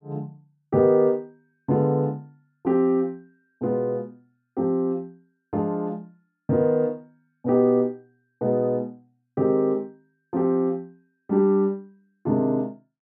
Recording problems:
none

